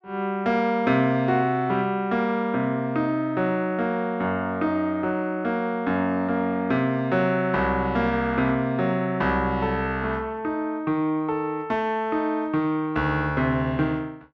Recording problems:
none

